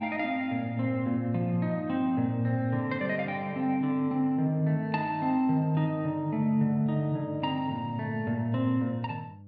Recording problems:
electrical hum; 50 Hz, harmonics up to 600 Hz, SNR 22 dB

